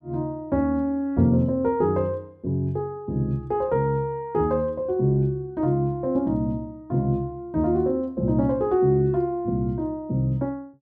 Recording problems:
none

